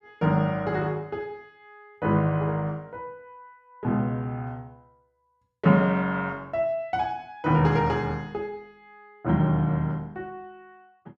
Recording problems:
none

